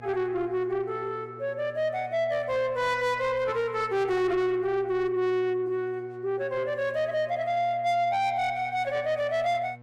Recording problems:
distorted audio; soft clipping, signal-to-distortion ratio 11 dB
hum; 60 Hz, harmonics up to 1.3 kHz, SNR 21 dB

